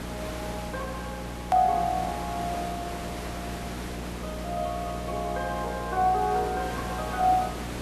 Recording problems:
electrical hum; 60 Hz, harmonics up to 600 Hz, SNR 10 dB
hiss; slope -5 dB per octave, SNR 9 dB
edit click; at 1.5 s

